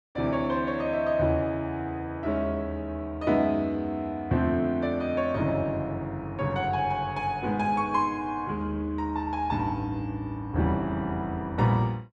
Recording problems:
none

